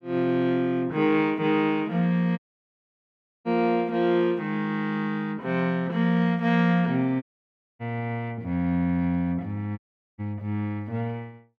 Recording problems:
audio cutting out; at 2.5 s for 1 s, at 7 s for 0.5 s and at 10 s

